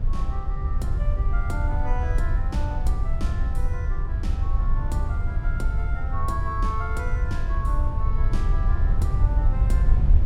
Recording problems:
rumble; below 72 Hz, SNR -8 dB

